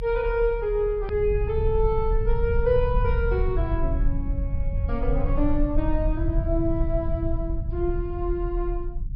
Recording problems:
treble missing; nothing above 5.5 kHz
low-frequency rumble; below 72 Hz, SNR 1 dB
edit click; at 1 s

